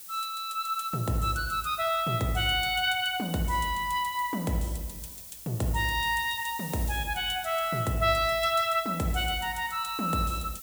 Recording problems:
hiss; SNR 13 dB

